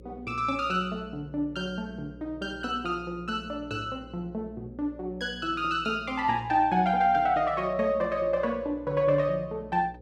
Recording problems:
mains hum; 60 Hz, harmonics up to 540 Hz, SNR 20 dB

